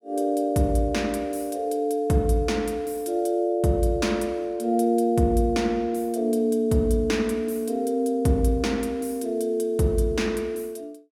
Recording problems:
none

